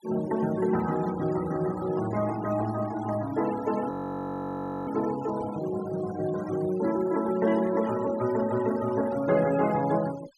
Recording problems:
noise reduction artefacts; signal-to-artefact ratio 17 dB
audio freezing; at 4 s for 1 s

